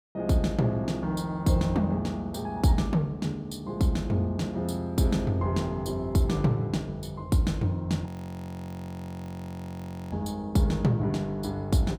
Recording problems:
audio freezing; at 8 s for 2 s

